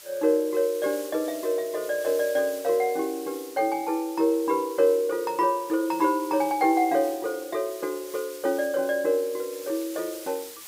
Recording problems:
background hiss; slope +2 dB per octave, SNR 16 dB

